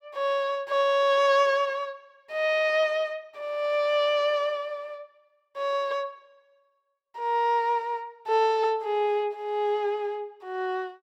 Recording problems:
none

